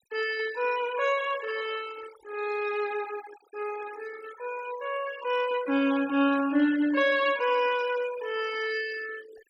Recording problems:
denoising artefacts; signal-to-artefact ratio 16 dB

